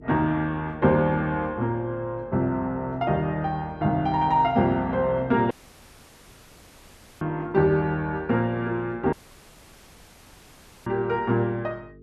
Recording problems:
mains hum; 50 Hz, harmonics up to 450 Hz, SNR 23 dB
audio cutting out; at 5.5 s for 1.5 s and at 9 s for 1.5 s

